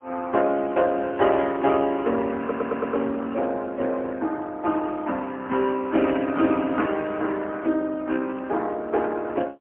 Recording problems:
phone line; 240 Hz to 3.2 kHz, AMR-NB, then MP3
stutter; at 2.5 s

